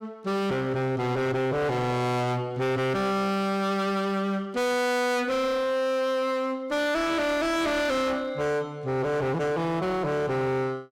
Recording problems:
distortion; hard clipping, uneven, signal-to-distortion ratio 5 dB

